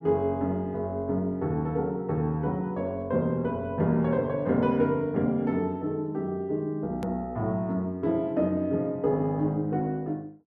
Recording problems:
hard cut with a click; at 7 s

